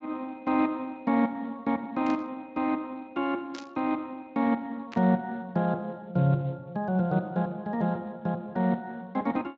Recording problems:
lossy compression; Speex, log-spectral distance 2 dB
static burst; at 2 s, at 3.5 s and at 5 s; peak -10 dB vs average level

